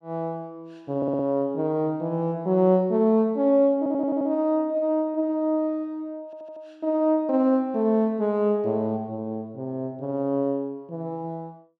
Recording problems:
audio stuttering; at 1 s, at 4 s and at 6.5 s

